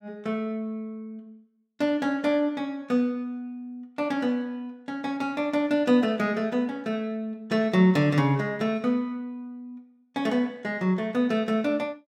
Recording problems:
none

